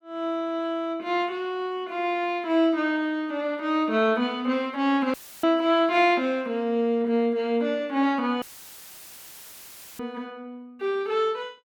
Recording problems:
audio cutting out; at 5 s and at 8.5 s for 1.5 s; filled with static

